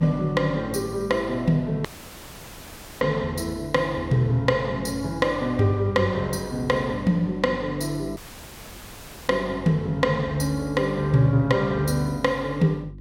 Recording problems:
hum; 50 Hz, harmonics up to 350 Hz, SNR 19 dB
audio cutting out; at 2 s for 1 s and at 8 s for 1 s

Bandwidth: 16.5 kHz